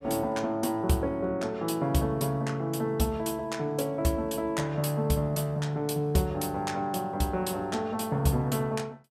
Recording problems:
none

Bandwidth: 15.5 kHz